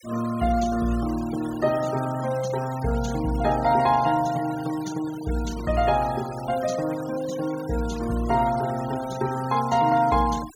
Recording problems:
denoising artefacts; signal-to-artefact ratio 16 dB

